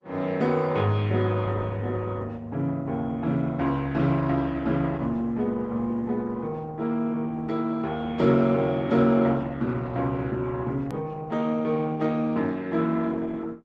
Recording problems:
codec artefacts; Opus, log-spectral distance 2 dB, nothing above 13.1 kHz
edit click; at 11 s

